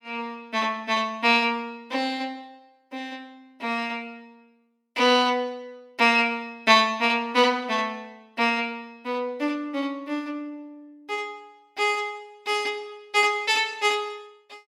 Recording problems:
none

